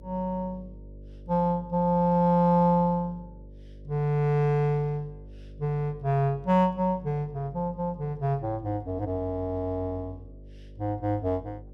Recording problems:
electrical hum; 50 Hz, harmonics up to 600 Hz, SNR 20 dB

